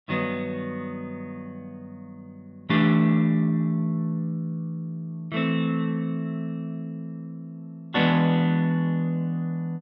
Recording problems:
none

